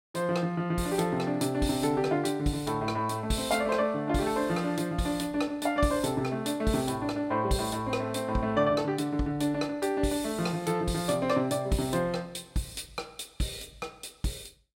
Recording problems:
none

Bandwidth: 16 kHz